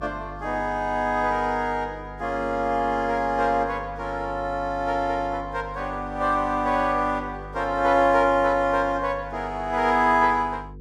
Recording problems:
hum; 50 Hz, harmonics up to 500 Hz, SNR 17 dB

